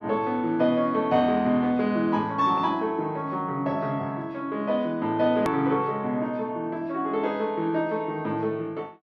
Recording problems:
edit click; at 5.5 s

